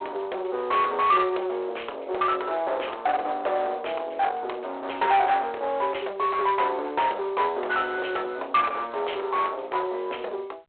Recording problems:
phone line; 370 Hz to 3.7 kHz, G.726
distorted audio; soft clipping, signal-to-distortion ratio 9 dB

